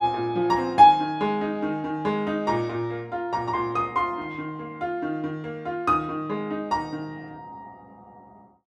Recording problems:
none

